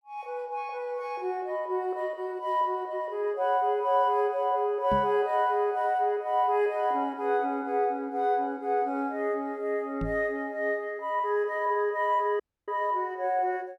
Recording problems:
microphone bump; at 5 s and at 10 s; peak -2 dB vs average level
audio cutting out; at 12 s

